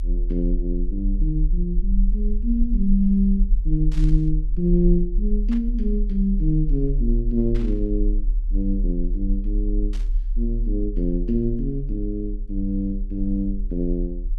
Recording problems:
low-frequency rumble; below 38 Hz, strongest tone 36 Hz, SNR 1 dB
burst of static; 4 times, first at 4 s; peak -13 dB vs average level

